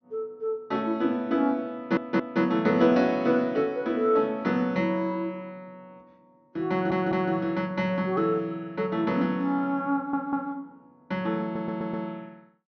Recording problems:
low-pass filter; nothing above 6.2 kHz
audio stuttering; 4 times, first at 2 s

